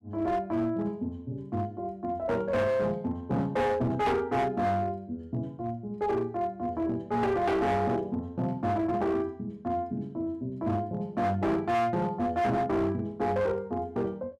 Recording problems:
distorted audio; hard clipping, uneven, signal-to-distortion ratio 10 dB

